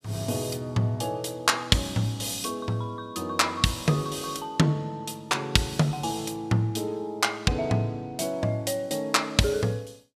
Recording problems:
none

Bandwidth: 14.5 kHz